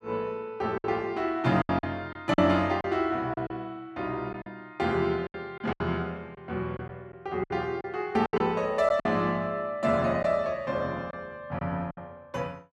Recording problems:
lost packets; 7% of the sound replaced, filled with silence

